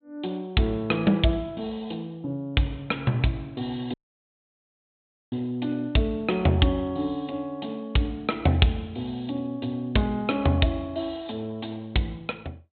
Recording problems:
treble missing; nothing above 4 kHz
dropout; at 4 s for 1.5 s

